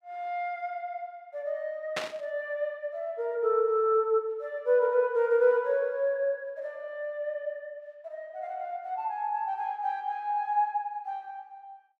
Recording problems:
burst of static; at 2 s; peak +2 dB vs average level

